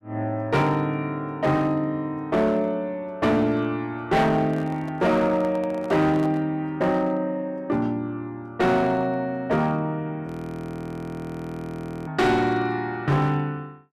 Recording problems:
distortion; hard clipping, signal-to-distortion ratio 10 dB
handling noise; from 4.5 to 6.5 s; peak -8 dB vs average level
audio freezing; at 10 s for 2 s

